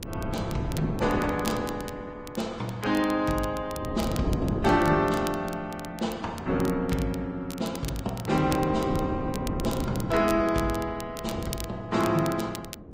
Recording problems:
lossy compression; Vorbis, log-spectral distance 2 dB
wind noise; below 350 Hz, SNR 7 dB
crackle; vinyl, SNR 15 dB

